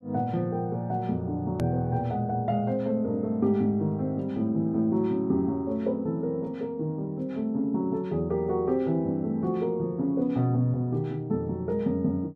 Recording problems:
click at an edit; at 1.5 s

